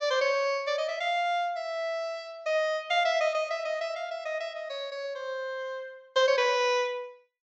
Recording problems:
low-pass filter; nothing above 8 kHz

